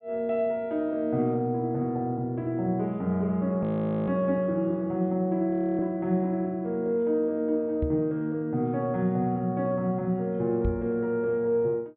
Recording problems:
treble missing; nothing above 4 kHz
audio freezing; at 3.5 s and at 5.5 s
microphone thump; at 8 s and at 11 s; peak +2 dB vs average level

